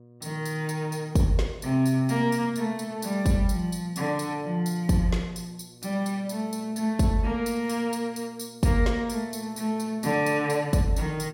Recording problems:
electrical hum; 60 Hz, harmonics up to 720 Hz, SNR 26 dB

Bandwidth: 16.5 kHz